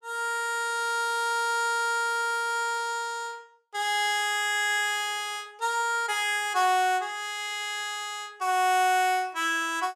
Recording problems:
none

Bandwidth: 15 kHz